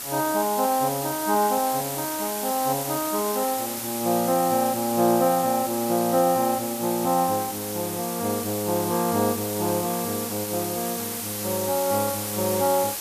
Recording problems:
hiss; slope 0 dB per octave, SNR 5 dB

